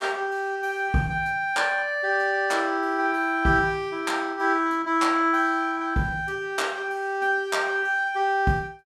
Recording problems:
none

